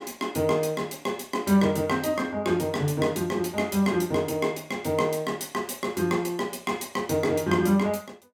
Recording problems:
none

